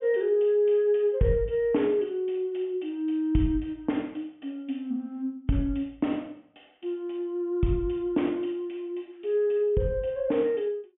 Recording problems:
low-pass filter; nothing above 3.4 kHz

